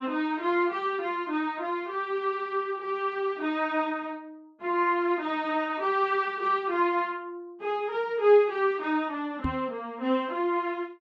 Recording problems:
microphone thump; at 9.5 s; peak +1 dB vs average level

